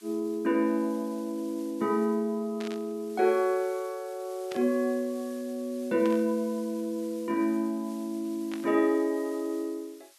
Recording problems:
background hiss; slope +4 dB per octave, SNR 23 dB
burst of static; 4 times, first at 2.5 s; peak -8 dB vs average level

